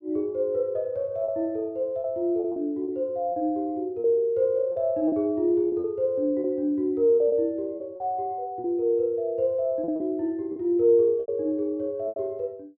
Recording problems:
lost packets; 8% of the sound replaced, filled with repeated pitch periods

